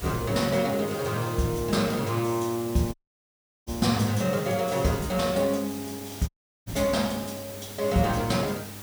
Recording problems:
hum; 50 Hz, harmonics up to 600 Hz, SNR 20 dB
background hiss; slope -3 dB per octave, SNR 13 dB
audio cutting out; at 3 s for 0.5 s and at 6.5 s

